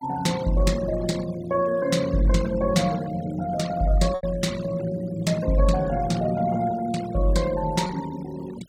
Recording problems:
noise reduction artefacts; signal-to-artefact ratio 19 dB
lost packets; 1.2% of the sound replaced, filled with repeated pitch periods

